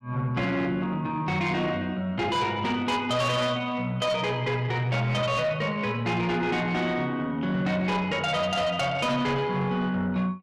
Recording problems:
distortion; soft clipping, signal-to-distortion ratio 10 dB

